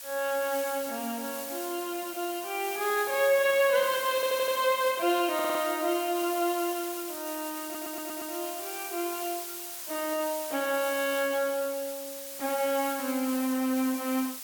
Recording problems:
background hiss; slope +3 dB per octave, SNR 8 dB
audio stuttering; at 4 s, at 5.5 s and at 7.5 s

